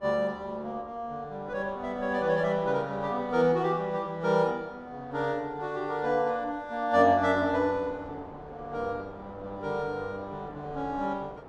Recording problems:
wind on the microphone; below 860 Hz, SNR 19 dB

